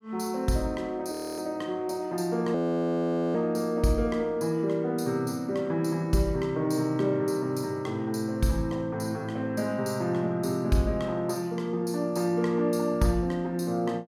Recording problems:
audio freezing; at 1 s and at 2.5 s for 1 s

